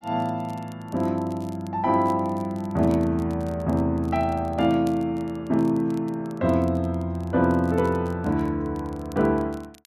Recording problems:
crackle; vinyl, SNR 29 dB

